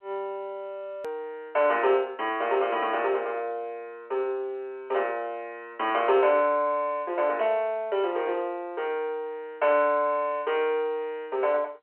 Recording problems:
phone line; 340 Hz to 3.1 kHz, G.711
click at an edit; at 1 s

